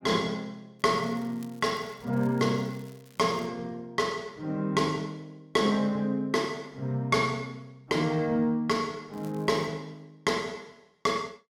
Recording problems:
crackling; from 1 to 3.5 s and at 9 s; loose cable, SNR 27 dB

